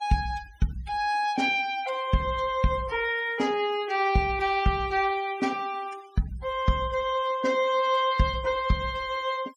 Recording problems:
noise reduction artefacts; signal-to-artefact ratio 21 dB

